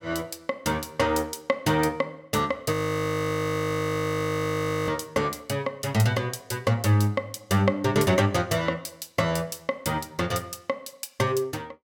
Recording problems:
frozen audio; at 2.5 s for 2 s

